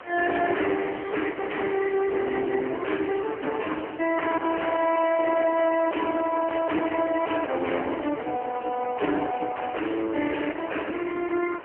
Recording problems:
telephone audio; 260 Hz to 3 kHz, AMR-NB
distortion; soft clipping, signal-to-distortion ratio 6 dB
background hiss; SNR 16 dB

